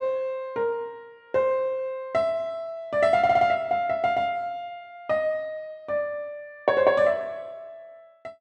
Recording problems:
audio stuttering; at 3 s

